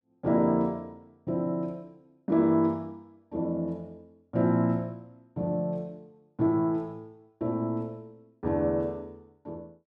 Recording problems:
none

